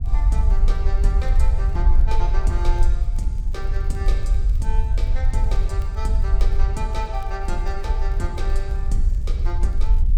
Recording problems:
rumble; below 52 Hz, SNR -10 dB
crackle; vinyl, SNR 26 dB

